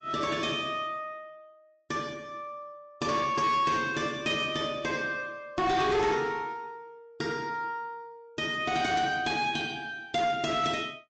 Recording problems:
low-pass filter; nothing above 7.6 kHz
codec artefacts; MP3, log-spectral distance 2 dB
distortion; soft clipping, signal-to-distortion ratio 10 dB

